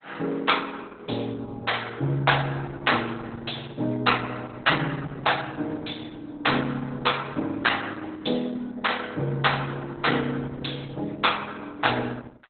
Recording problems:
lossy compression; Opus, log-spectral distance 6 dB, nothing above 4 kHz

